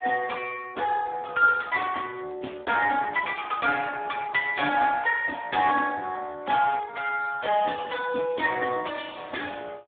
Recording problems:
telephone audio; 240 Hz to 3.5 kHz, Speex

